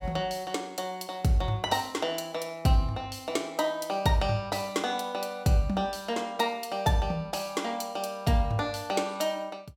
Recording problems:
none

